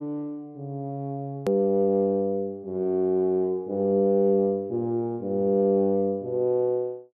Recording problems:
hard cut with a click; at 1.5 s

